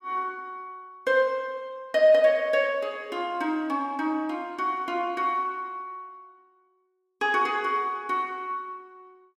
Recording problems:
none

